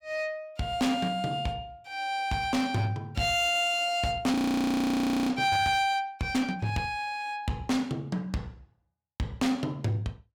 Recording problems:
distorted audio; hard clipping, uneven, signal-to-distortion ratio 10 dB
audio freezing; at 4.5 s for 1 s

